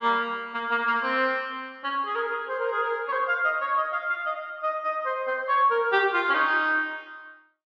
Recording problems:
none

